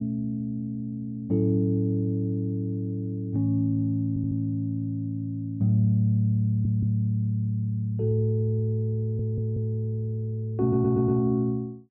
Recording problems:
stutter; 4 times, first at 4 s

